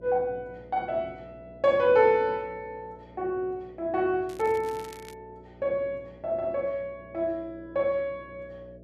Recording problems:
electrical hum; 60 Hz, harmonics up to 660 Hz, SNR 23 dB
crackling; at 4.5 s; loose cable, SNR 22 dB

